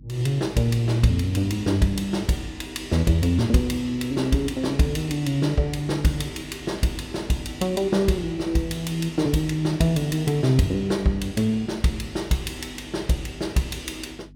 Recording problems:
electrical hum; 50 Hz, harmonics up to 300 Hz, SNR 23 dB

